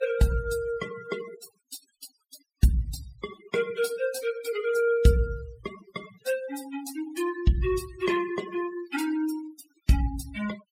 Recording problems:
noise reduction artefacts; signal-to-artefact ratio 15 dB

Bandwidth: 16 kHz